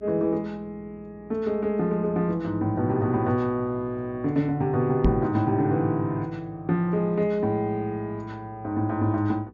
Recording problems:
low-pass filter; nothing above 7.6 kHz
hum; 60 Hz, harmonics up to 420 Hz, SNR 26 dB
knock on the microphone; at 5 s; peak +7 dB vs average level

